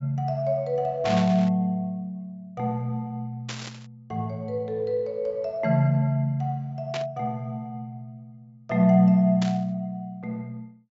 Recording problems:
low-pass filter; nothing above 8 kHz
static burst; 4 times, first at 1 s; peak -4 dB vs average level

